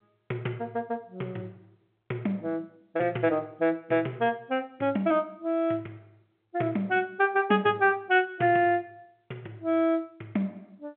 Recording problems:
phone line; 240 Hz to 3.7 kHz, G.711

